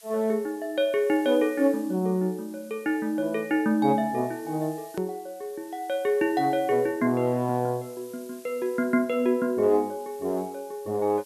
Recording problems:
hiss; slope +3 dB per octave, SNR 24 dB
edit click; at 5 s

